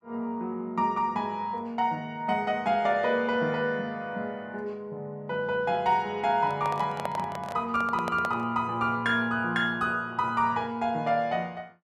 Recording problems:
microphone handling noise; from 6.5 to 8.5 s; peak 0 dB vs average level

